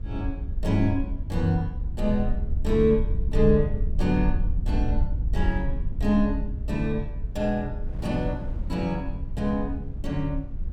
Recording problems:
rumble; below 66 Hz, SNR 3 dB
wind on the microphone; below 260 Hz, SNR 20 dB

